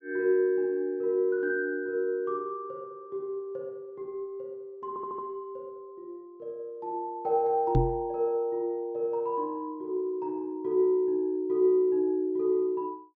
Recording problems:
treble missing; nothing above 8 kHz
audio stuttering; at 5 s
microphone thump; at 8 s; peak +7 dB vs average level

